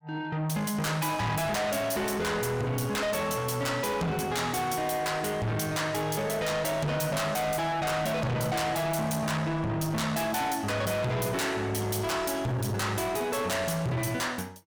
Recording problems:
distortion; soft clipping, signal-to-distortion ratio 6 dB

